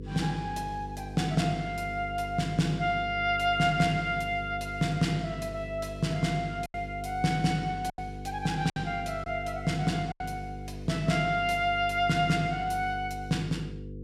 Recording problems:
hum; 50 Hz, harmonics up to 500 Hz, SNR 11 dB
lost packets; 2% of the sound replaced, filled with silence

